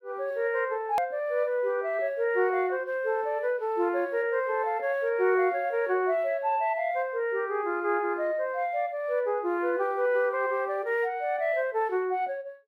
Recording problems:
edit click; at 1 s

